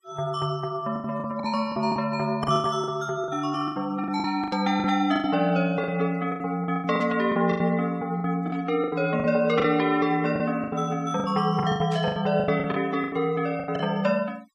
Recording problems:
denoising artefacts; signal-to-artefact ratio 25 dB
packet loss; 15% of the sound replaced, filled with the last packet
burst of static; 4 times, first at 4.5 s; peak -12 dB vs average level

